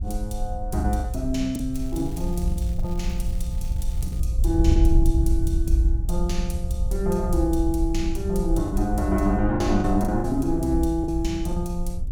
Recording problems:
wind noise; below 70 Hz, SNR 2 dB
lost packets; 5% of the sound replaced, filled with the last packet
crackling; from 1.5 to 4 s; loose cable, SNR 24 dB

